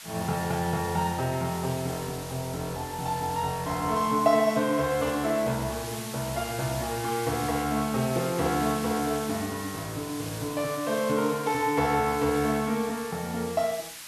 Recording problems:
hiss; SNR 11 dB

